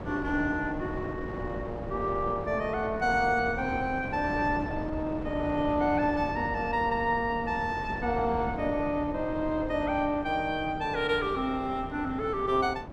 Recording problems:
wind noise; below 530 Hz, SNR 9 dB

